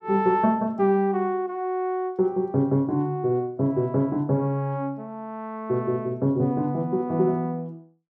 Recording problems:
none

